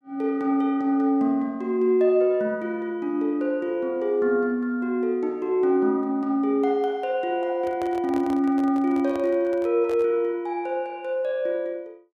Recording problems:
handling noise; from 7.5 to 10 s; peak -9 dB vs average level

